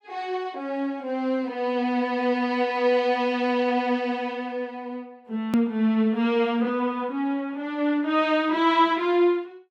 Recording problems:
click at an edit; at 5.5 s

